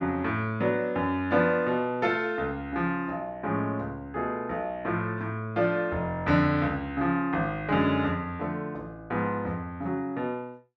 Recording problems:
none

